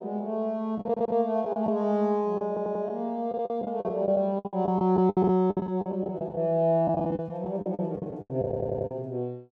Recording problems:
lost packets; 14% of the sound replaced, filled with the last packet
stutter; at 1 s, at 2.5 s and at 8.5 s

